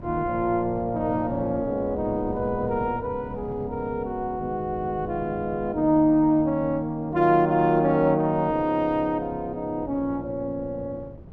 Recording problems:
wind on the microphone; below 280 Hz, SNR 17 dB

